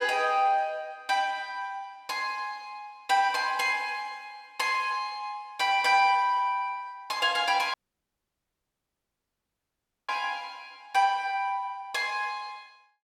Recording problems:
audio cutting out; at 7.5 s for 2.5 s

